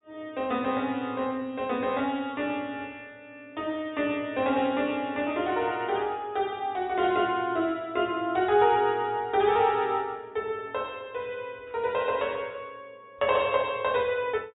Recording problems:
low-pass filter; nothing above 4 kHz

